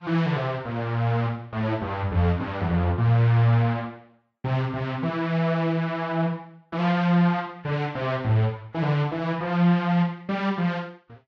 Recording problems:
codec artefacts; Vorbis, log-spectral distance 2 dB

